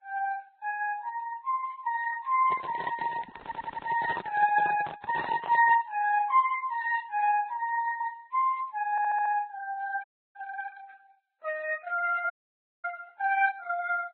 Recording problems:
codec artefacts; Opus, then Vorbis, log-spectral distance 2 dB, nothing above 4 kHz
microphone handling noise; from 2.5 to 6 s; peak +1 dB vs average level
audio stuttering; at 3.5 s and at 9 s
audio cutting out; at 10 s and at 12 s for 0.5 s

